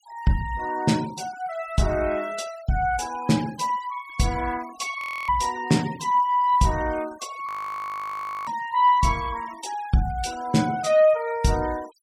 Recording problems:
noise reduction artefacts; signal-to-artefact ratio 21 dB
audio freezing; at 5 s and at 7.5 s for 1 s

